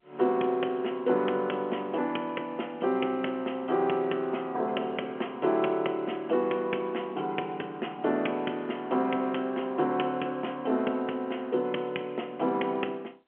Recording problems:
phone line; 220 Hz to 3.3 kHz, G.711

